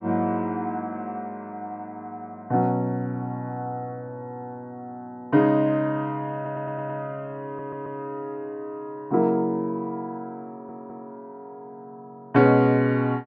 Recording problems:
audio stuttering; at 6.5 s, at 7.5 s and at 10 s

